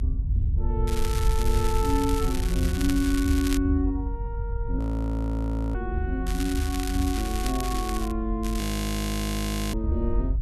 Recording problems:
rumble; below 62 Hz, strongest tone 46 Hz, SNR 2 dB
wind noise; below 90 Hz, SNR 9 dB
crackling; from 1 to 3.5 s, from 6.5 to 8 s and at 8.5 s; loose cable, SNR 7 dB
frozen audio; at 5 s for 1 s and at 8.5 s for 1 s

